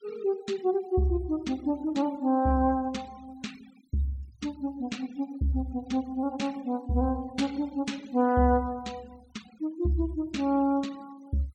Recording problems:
noise reduction artefacts; signal-to-artefact ratio 24 dB

